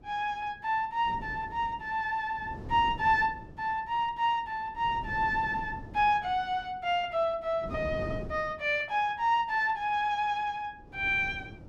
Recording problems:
wind noise; below 340 Hz, SNR 15 dB

